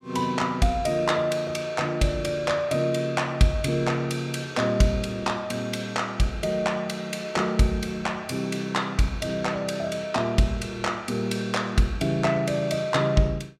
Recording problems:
none

